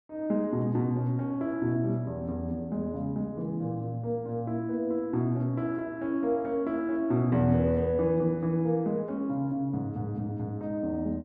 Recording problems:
none

